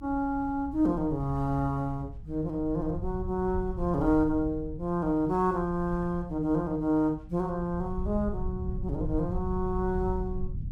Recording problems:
rumble; below 94 Hz, SNR 10 dB

